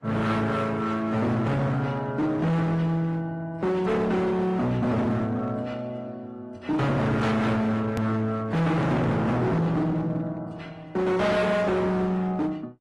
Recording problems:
codec artefacts; Opus, then AAC, log-spectral distance 2 dB, nothing above 12.3 kHz
distortion; hard clipping, uneven, signal-to-distortion ratio 6 dB
hard cut with a click; at 8 s

